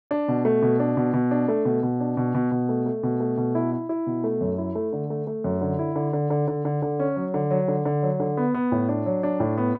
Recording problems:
none

